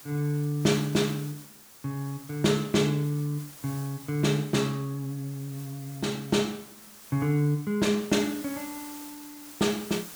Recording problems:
hiss; slope -1 dB per octave, SNR 17 dB

